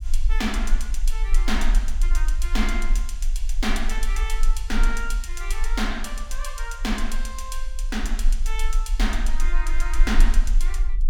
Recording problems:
rumble; below 36 Hz, strongest tone 20 Hz, SNR -4 dB

